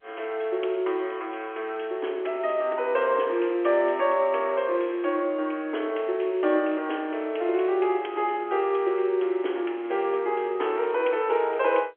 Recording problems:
phone line; 280 Hz to 3.4 kHz, G.711

